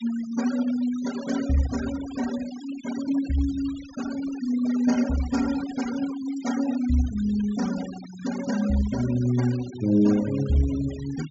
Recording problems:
treble cut off; nothing above 8 kHz
denoising artefacts; signal-to-artefact ratio 15 dB

